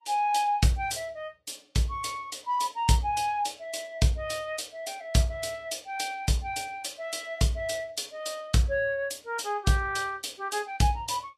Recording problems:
lossy codec; Vorbis, log-spectral distance 3 dB, nothing above 13.1 kHz

